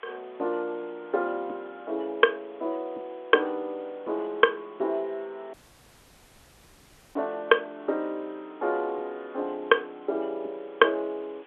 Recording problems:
phone line; 280 Hz to 3.6 kHz, G.711
background hiss; SNR 26 dB
dropout; at 5.5 s for 1.5 s

